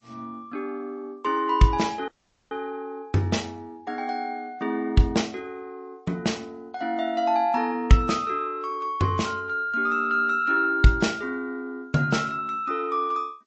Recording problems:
codec artefacts; G.722, then MP3, log-spectral distance 2 dB, nothing above 7.6 kHz
audio cutting out; at 2 s

